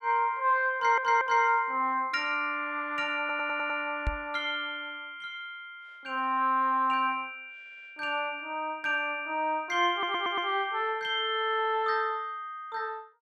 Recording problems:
audio stuttering; 4 times, first at 1 s
knock on the microphone; at 4 s; peak +1 dB vs average level

